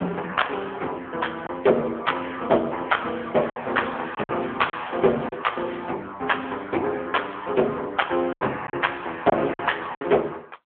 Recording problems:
phone line; 300 Hz to 3.4 kHz, AMR-NB
distorted audio; hard clipping, uneven, signal-to-distortion ratio 14 dB
lost packets; 4% of the sound replaced, filled with silence
crackle; from 3.5 to 6 s; loose cable, SNR 26 dB

